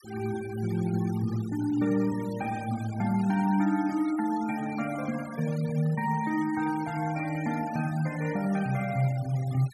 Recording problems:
denoising artefacts; signal-to-artefact ratio 18 dB

